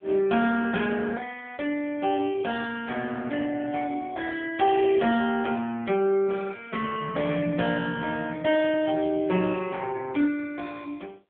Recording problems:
telephone audio; 260 Hz to 3.4 kHz, AMR-NB

